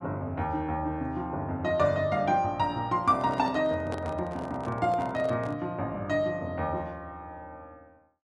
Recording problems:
microphone handling noise; from 3 to 5.5 s; peak -3 dB vs average level

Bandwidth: 11.5 kHz